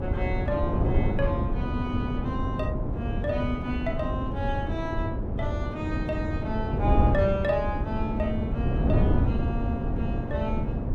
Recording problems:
wind on the microphone; below 220 Hz, SNR -3 dB

